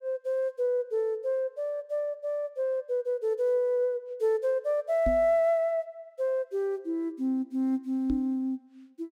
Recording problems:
microphone thump; at 5 s and at 8 s; peak 0 dB vs average level

